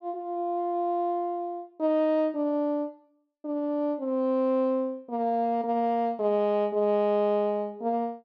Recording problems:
none

